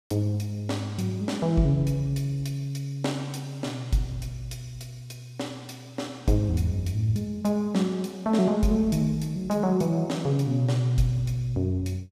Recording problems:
none

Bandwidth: 14.5 kHz